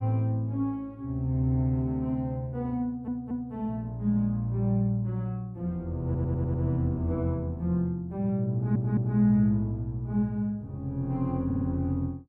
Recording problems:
stutter; 4 times, first at 3 s

